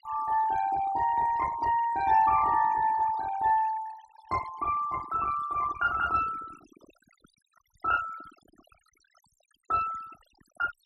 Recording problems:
noise reduction artefacts; signal-to-artefact ratio 17 dB

